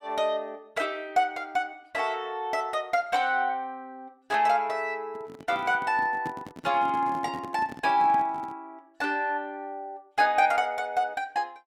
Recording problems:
microphone handling noise; from 5 to 8.5 s; peak -6 dB vs average level

